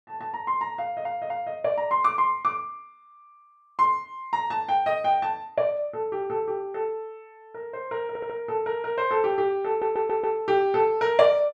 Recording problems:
stutter; at 1 s, at 8 s and at 9.5 s

